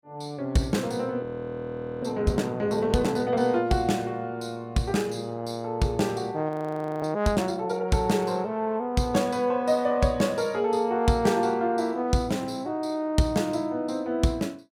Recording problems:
frozen audio; at 1 s for 1 s and at 6.5 s for 0.5 s

